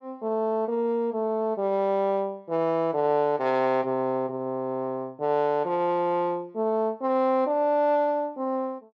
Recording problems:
none

